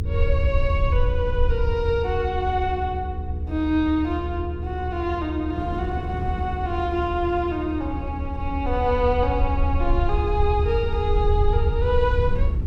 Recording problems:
hum; 60 Hz, harmonics up to 480 Hz, SNR 13 dB
rumble; below 78 Hz, SNR 2 dB
wind on the microphone; below 220 Hz, SNR 15 dB

